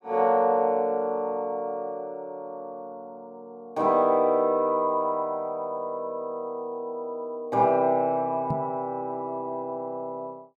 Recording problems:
knock on the microphone; at 8.5 s; peak 0 dB vs average level

